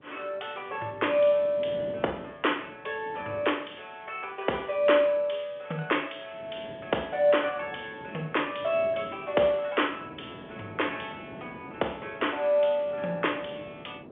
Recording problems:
telephone audio; 280 Hz to 3.3 kHz, G.711
wind noise; below 520 Hz, SNR 18 dB

